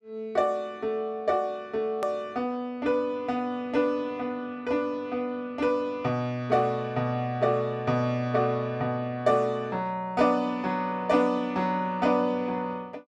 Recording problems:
hard cut with a click; at 2 s

